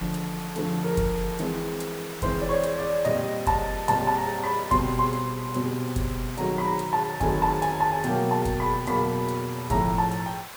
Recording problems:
hiss; SNR 12 dB

